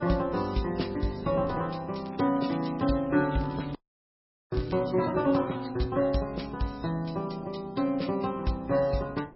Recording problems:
lossy codec; MP3, log-spectral distance 4 dB, nothing above 5.5 kHz
wind noise; below 530 Hz, SNR 21 dB
crackling; from 2 to 5.5 s; loose cable, SNR 23 dB
frozen audio; at 4 s for 1 s

